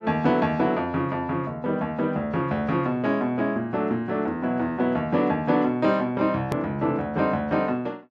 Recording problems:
hard cut with a click; at 6.5 s

